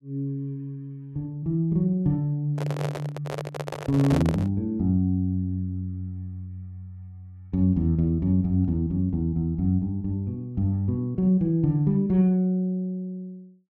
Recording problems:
microphone handling noise; from 2.5 to 4.5 s; peak -1 dB vs average level

